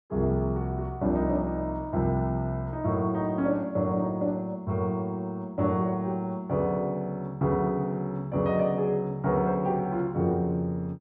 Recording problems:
none

